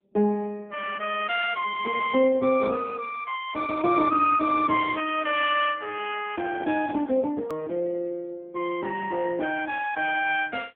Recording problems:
telephone audio; 130 Hz to 3.3 kHz, AMR-NB
click at an edit; at 7.5 s

